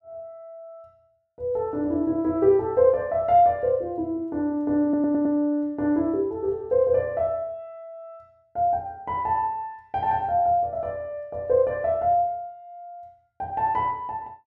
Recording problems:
audio stuttering; at 5 s

